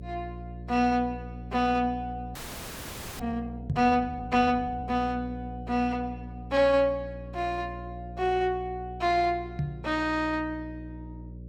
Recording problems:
hum; 60 Hz, harmonics up to 600 Hz, SNR 13 dB
audio freezing; at 2.5 s for 1 s
knock on the microphone; at 3.5 s and at 9.5 s; peak +2 dB vs average level

